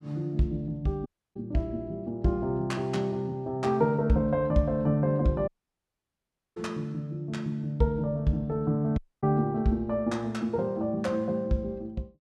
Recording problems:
dropout; at 1 s, at 5.5 s for 1 s and at 9 s

